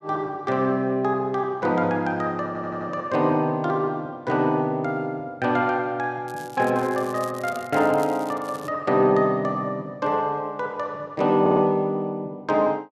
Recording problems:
audio stuttering; at 2.5 s and at 11 s
crackle; from 6.5 to 8.5 s; loose cable, SNR 21 dB

